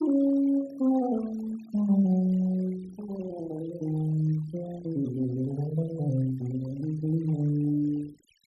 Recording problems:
denoising artefacts; signal-to-artefact ratio 23 dB

